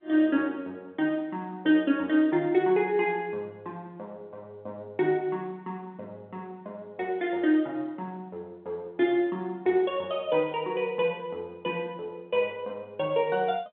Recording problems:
phone line; 240 Hz to 3.7 kHz, G.711

